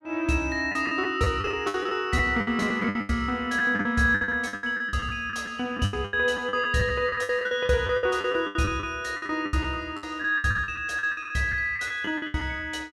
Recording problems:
lost packets; 19% of the sound replaced, filled with the last packet

